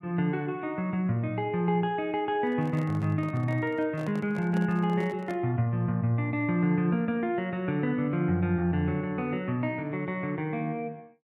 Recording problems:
microphone handling noise; from 2.5 to 5.5 s; peak -8 dB vs average level

